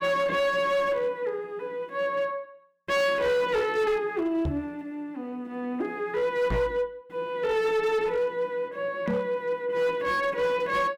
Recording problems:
distorted audio; hard clipping, signal-to-distortion ratio 11 dB
microphone thump; at 4.5 s, at 6.5 s and at 9 s; peak +2 dB vs average level

